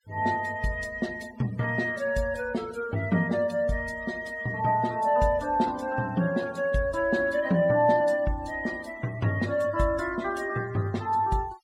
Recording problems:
denoising artefacts; signal-to-artefact ratio 22 dB

